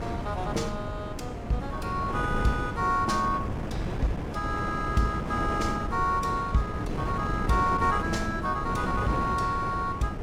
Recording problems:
wind on the microphone; below 440 Hz, SNR 4 dB

